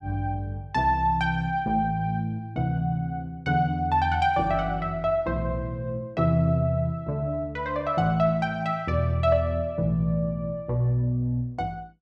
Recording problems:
none

